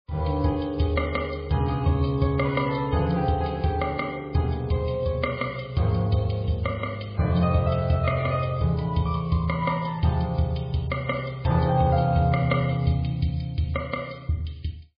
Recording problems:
codec artefacts; MP3, log-spectral distance 4 dB, nothing above 4.5 kHz

